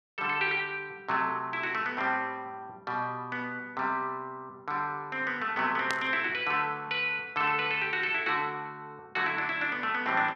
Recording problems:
burst of static; at 6 s; peak 0 dB vs average level

